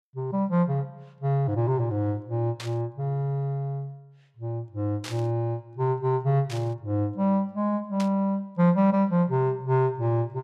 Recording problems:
burst of static; 4 times, first at 2.5 s; peak -6 dB vs average level

